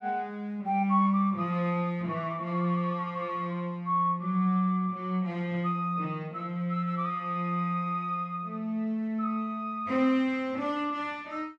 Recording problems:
none

